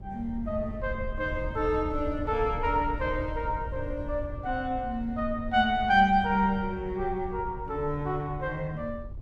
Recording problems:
wind noise; below 96 Hz, SNR 11 dB

